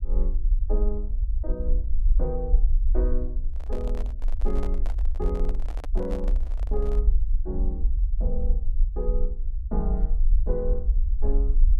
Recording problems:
rumble; below 46 Hz, SNR -8 dB
microphone handling noise; from 3.5 to 7 s; peak -1 dB vs average level

